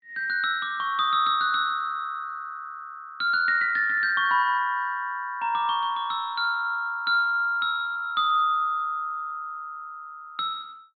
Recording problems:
treble missing; nothing above 4.5 kHz

